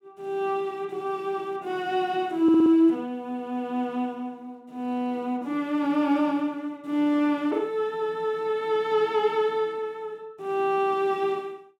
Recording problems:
audio stuttering; at 2.5 s

